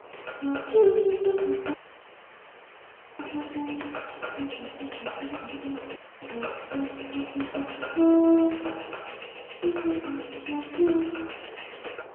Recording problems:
phone line; 300 Hz to 3.1 kHz, AMR-NB
wind noise; below 1.1 kHz, SNR 18 dB
dropout; at 1.5 s for 1.5 s and at 6 s

